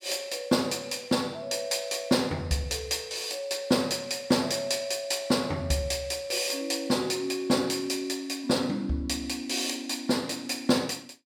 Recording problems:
none

